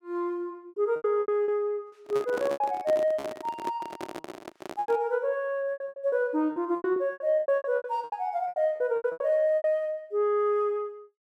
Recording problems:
lost packets; 17% of the sound replaced, filled with repeated pitch periods
handling noise; from 2 to 5 s; peak -3 dB vs average level

